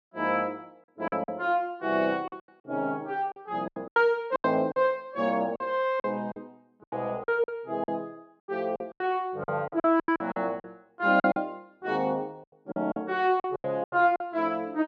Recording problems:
lost packets; 12% of the sound replaced, filled with silence

